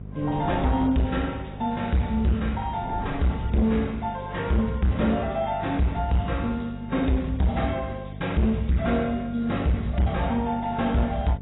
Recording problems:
codec artefacts; AAC, log-spectral distance 3 dB, nothing above 3.8 kHz
distorted audio; soft clipping, signal-to-distortion ratio 10 dB
hum; 50 Hz, harmonics up to 650 Hz, SNR 13 dB
wind on the microphone; below 270 Hz, SNR 18 dB

